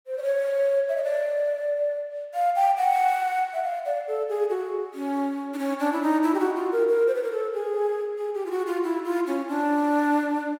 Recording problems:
none

